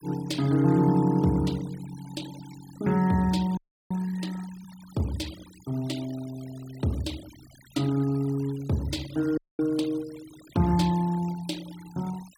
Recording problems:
denoising artefacts; signal-to-artefact ratio 20 dB
audio freezing; at 3.5 s and at 9.5 s

